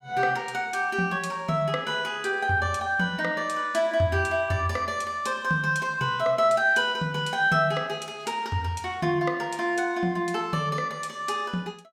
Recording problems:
none

